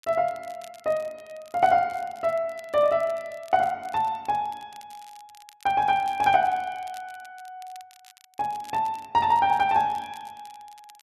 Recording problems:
crackle; vinyl, SNR 27 dB

